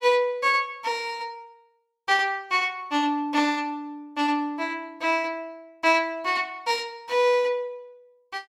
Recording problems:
none

